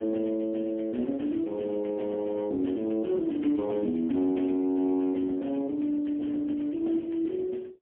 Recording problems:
telephone audio; 170 Hz to 3.4 kHz, AMR-NB, then MP3

